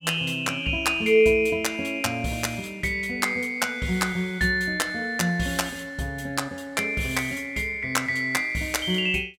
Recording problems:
none

